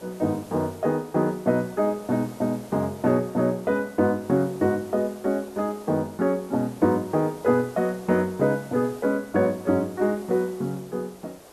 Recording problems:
background hiss; SNR 21 dB

